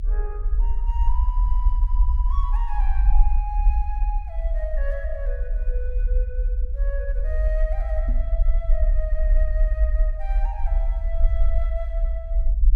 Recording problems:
low-frequency rumble; below 50 Hz, SNR -12 dB
microphone bump; at 8 s; peak +3 dB vs average level

